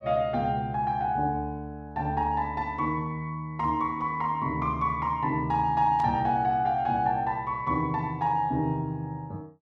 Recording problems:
burst of static; at 6 s; peak -16 dB vs average level

